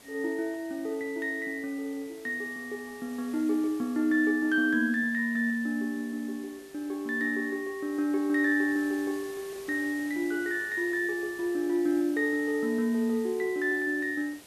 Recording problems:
hiss; SNR 21 dB

